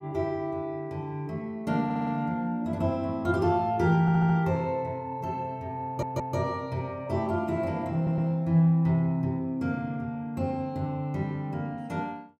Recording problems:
audio stuttering; 4 times, first at 2 s

